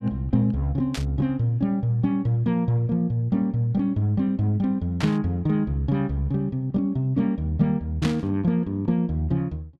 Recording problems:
burst of static; at 1 s, at 5 s and at 8 s; peak -4 dB vs average level

